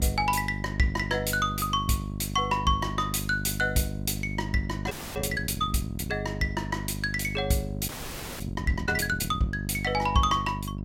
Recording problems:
hum; 50 Hz, harmonics up to 650 Hz, SNR 6 dB
audio freezing; at 5 s and at 8 s for 0.5 s

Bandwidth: 16.5 kHz